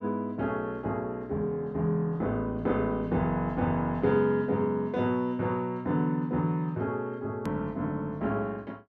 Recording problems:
hard cut with a click; at 7.5 s

